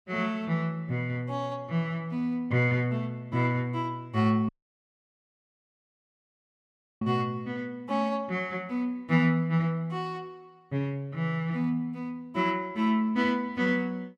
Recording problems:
audio cutting out; at 4.5 s for 2.5 s

